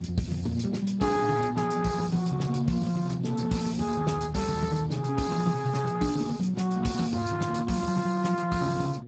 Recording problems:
lossy compression; Speex, log-spectral distance 5 dB, nothing above 7.8 kHz
electrical hum; 60 Hz, harmonics up to 720 Hz, SNR 14 dB

